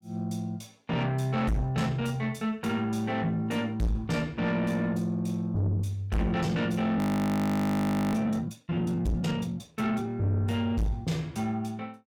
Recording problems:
distorted audio; soft clipping, signal-to-distortion ratio 6 dB
audio freezing; at 7 s for 1 s

